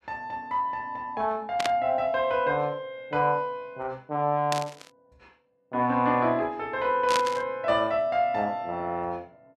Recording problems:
burst of static; at 1.5 s, at 4.5 s and at 7 s; peak +2 dB vs average level

